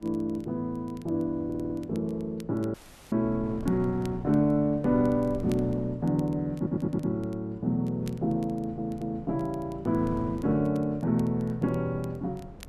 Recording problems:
wind on the microphone; below 280 Hz, SNR 16 dB
crackling; vinyl, SNR 29 dB
stutter; at 1.5 s, at 6.5 s and at 8.5 s
audio cutting out; at 2.5 s

